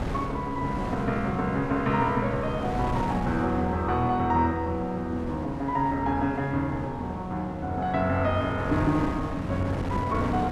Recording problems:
wind noise; below 620 Hz, SNR 8 dB

